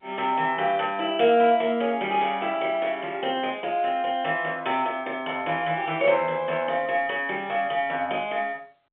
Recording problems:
telephone audio; 320 Hz to 3.5 kHz, G.711

